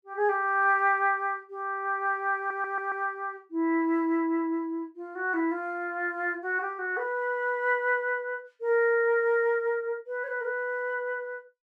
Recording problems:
audio stuttering; at 2.5 s

